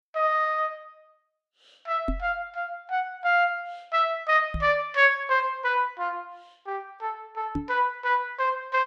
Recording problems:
microphone bump; at 2 s, at 4.5 s and at 7.5 s; peak -1 dB vs average level

